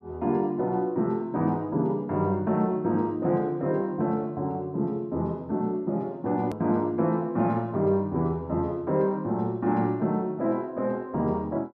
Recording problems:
hard cut with a click; at 6.5 s

